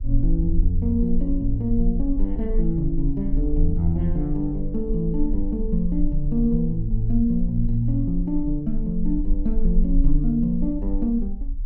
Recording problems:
rumble; below 38 Hz, strongest tone 24 Hz, SNR 4 dB

